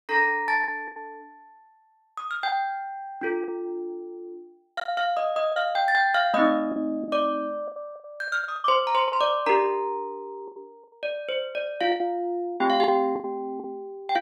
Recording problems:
packet loss; 9% of the sound replaced, filled with the last packet

